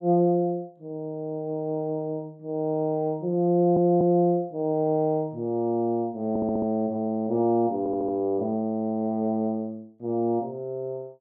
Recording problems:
audio stuttering; at 3.5 s, at 6.5 s and at 8 s

